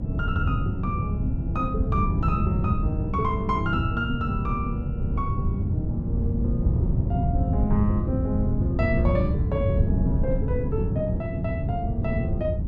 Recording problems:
hum; 60 Hz, harmonics up to 360 Hz, SNR 16 dB
wind noise; below 150 Hz, SNR -3 dB

